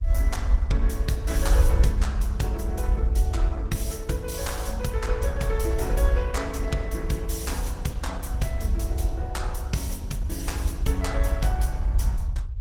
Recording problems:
lossy compression; Opus, log-spectral distance 2 dB, nothing above 17.4 kHz
rumble; below 66 Hz, SNR -4 dB

